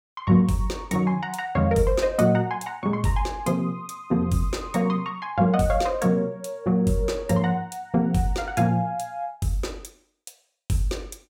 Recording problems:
none

